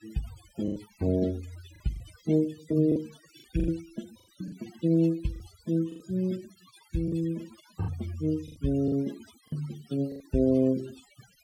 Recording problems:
denoising artefacts; signal-to-artefact ratio 20 dB
packet loss; 8% of the sound replaced, filled with the last packet

